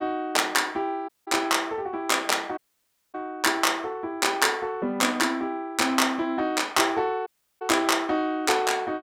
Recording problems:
audio cutting out; at 1 s, at 2.5 s for 0.5 s and at 7.5 s

